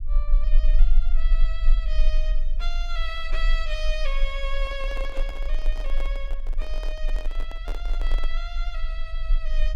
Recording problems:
low-frequency rumble; below 32 Hz, strongest tone 22 Hz, SNR -8 dB
handling noise; from 4.5 to 8.5 s; peak 0 dB vs average level

